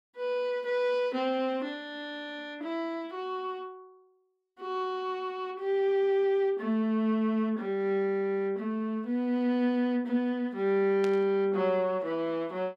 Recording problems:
burst of static; at 11 s; peak -8 dB vs average level

